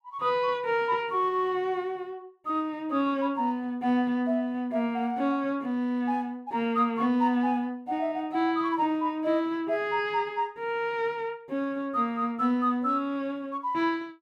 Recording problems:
none

